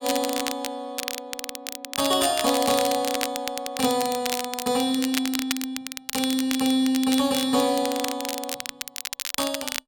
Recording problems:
crackling; vinyl, SNR 6 dB

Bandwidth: 17 kHz